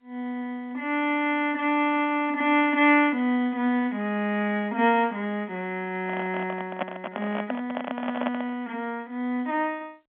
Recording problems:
phone line; 220 Hz to 3.4 kHz, G.711
handling noise; from 6 to 8.5 s; peak +1 dB vs average level

